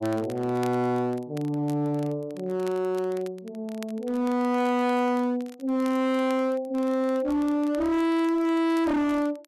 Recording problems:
distortion; hard clipping, signal-to-distortion ratio 5 dB
crackle; vinyl, SNR 25 dB

